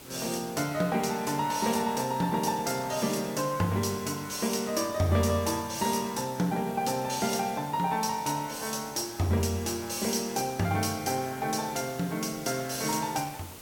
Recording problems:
background hiss; SNR 16 dB

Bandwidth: 17 kHz